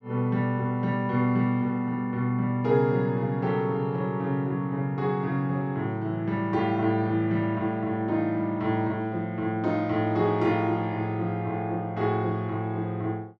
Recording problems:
none

